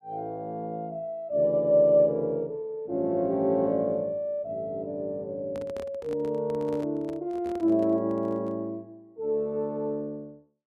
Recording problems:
microphone handling noise; from 5.5 to 8.5 s; peak -10 dB vs average level

